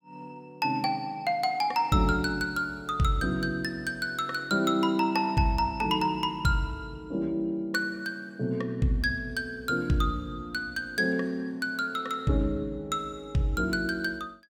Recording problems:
none

